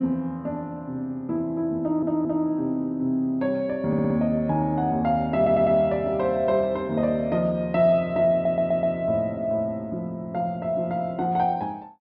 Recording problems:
treble missing; nothing above 5.5 kHz
stutter; 4 times, first at 2 s

